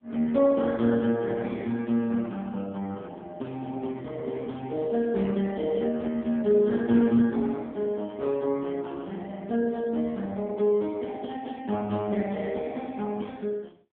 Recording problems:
telephone audio; 130 Hz to 3.1 kHz, AMR-NB

